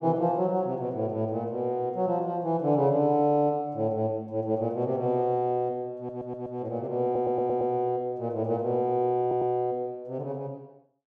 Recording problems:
stutter; at 6 s, at 7 s and at 9 s

